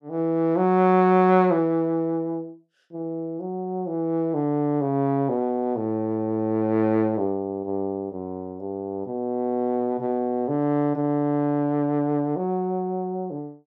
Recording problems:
none

